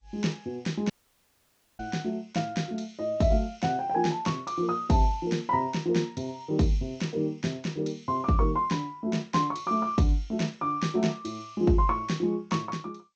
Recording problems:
lossy codec; MP2, then G.722, log-spectral distance 3 dB
audio cutting out; at 1 s for 1 s

